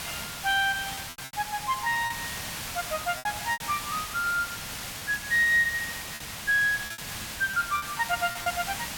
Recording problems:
background hiss; slope 0 dB per octave, SNR 7 dB
lost packets; 8% of the sound replaced, filled with repeated pitch periods

